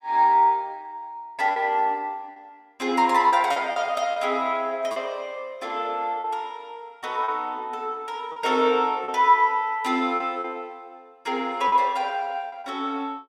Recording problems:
lost packets; 5% of the sound replaced, filled with repeated pitch periods

